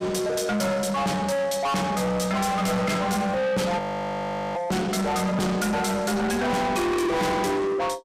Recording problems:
distortion; soft clipping, signal-to-distortion ratio 6 dB
audio freezing; at 4 s for 1 s

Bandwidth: 15.5 kHz